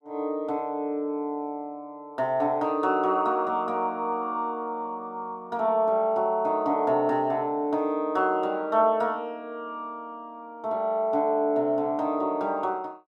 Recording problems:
none

